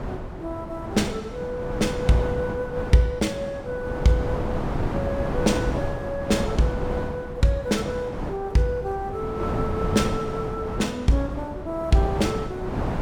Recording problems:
wind noise; below 580 Hz, SNR 5 dB

